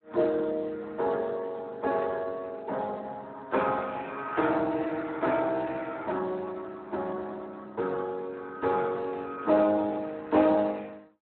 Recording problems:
telephone audio; 260 Hz to 2.4 kHz, Speex

